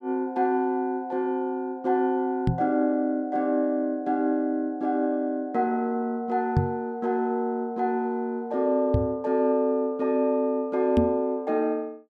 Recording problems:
microphone thump; 4 times, first at 2.5 s; peak +7 dB vs average level

